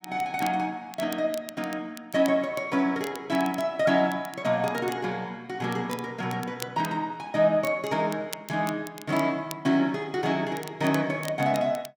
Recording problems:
crackling; vinyl, SNR 17 dB

